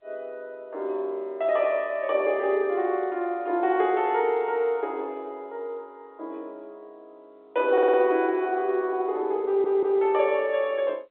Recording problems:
telephone audio; 300 Hz to 3.5 kHz, G.711
audio stuttering; at 7.5 s and at 9.5 s

